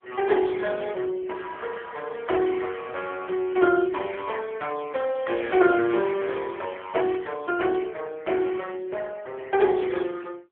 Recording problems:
telephone audio; 300 Hz to 3.4 kHz, AMR-NB

